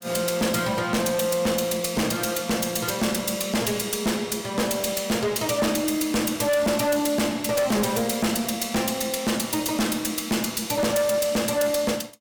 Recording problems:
distortion; hard clipping, uneven, signal-to-distortion ratio 7 dB

